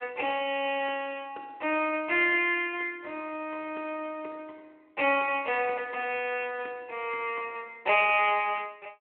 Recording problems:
telephone audio; 260 Hz to 3.1 kHz, Speex

